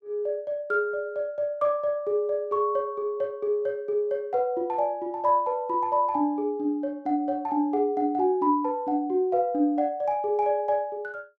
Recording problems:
none

